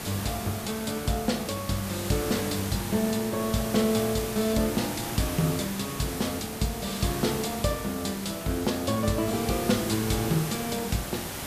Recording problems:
background hiss; slope -3 dB per octave, SNR 6 dB

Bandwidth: 14.5 kHz